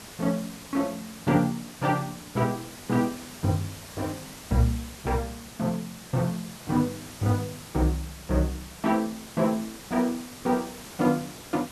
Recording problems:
background hiss; slope -2 dB per octave, SNR 14 dB

